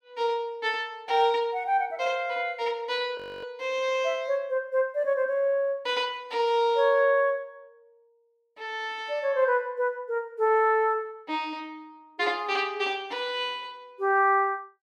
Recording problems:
frozen audio; at 3 s

